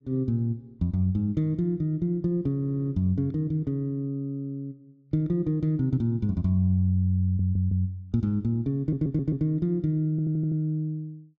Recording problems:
stutter; 4 times, first at 2.5 s

